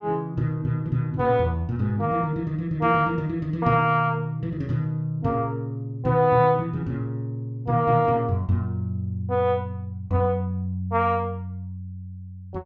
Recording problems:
none

